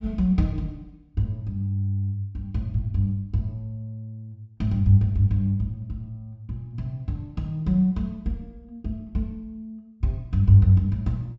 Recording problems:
low-pass filter; nothing above 7.7 kHz

